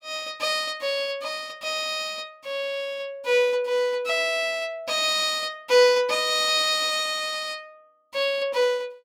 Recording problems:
none

